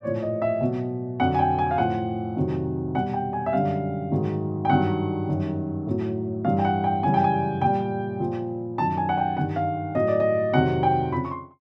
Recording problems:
none

